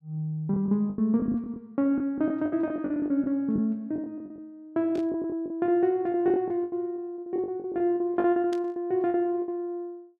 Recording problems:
packet loss; 15% of the sound replaced, filled with the last packet
burst of static; at 5 s and at 8.5 s; peak -12 dB vs average level

